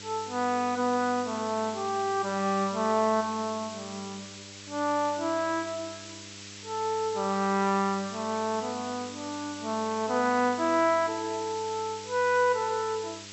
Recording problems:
treble cut off; nothing above 7.8 kHz
electrical hum; 50 Hz, harmonics up to 1.1 kHz, SNR 21 dB
background hiss; SNR 13 dB

